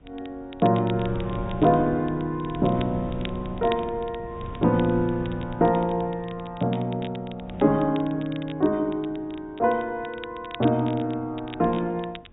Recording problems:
treble cut off; nothing above 4 kHz
wind on the microphone; below 220 Hz, SNR 14 dB
crackling; vinyl, SNR 20 dB

